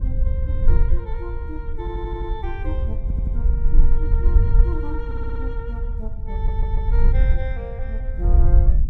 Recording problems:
wind on the microphone; below 56 Hz, SNR -12 dB
stutter; 4 times, first at 2 s

